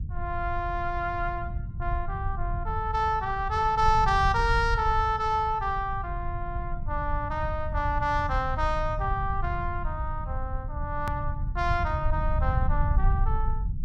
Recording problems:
low-frequency rumble; below 86 Hz, SNR 4 dB
hard cut with a click; at 11 s

